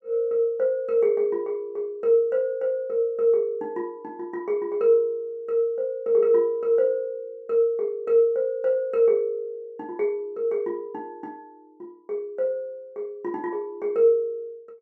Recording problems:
none

